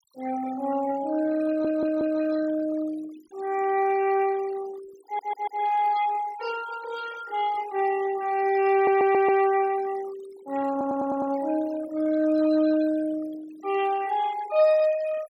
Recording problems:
noise reduction artefacts; signal-to-artefact ratio 18 dB
stutter; 4 times, first at 1.5 s

